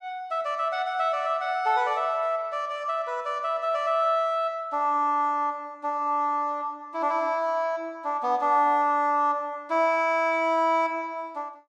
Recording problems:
none

